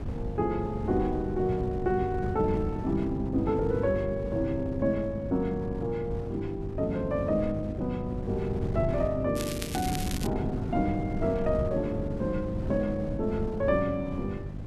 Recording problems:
hum; 50 Hz, harmonics up to 650 Hz, SNR 9 dB
wind noise; below 190 Hz, SNR 7 dB
crackling; at 9.5 s; loose cable, SNR 8 dB

